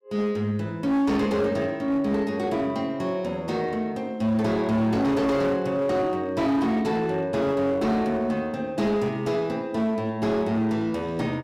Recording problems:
distorted audio; hard clipping, signal-to-distortion ratio 11 dB

